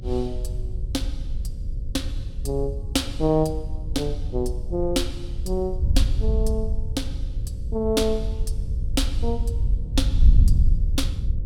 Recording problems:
electrical hum; 50 Hz, harmonics up to 550 Hz, SNR 17 dB
wind on the microphone; below 68 Hz, SNR -1 dB

